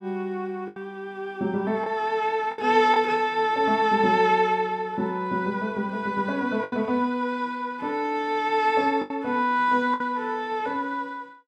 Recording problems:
lost packets; 4% of the sound replaced, filled with the last packet

